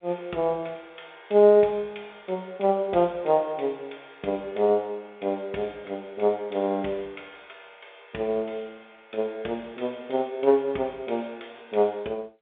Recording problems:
telephone audio; 240 Hz to 3.6 kHz, G.711

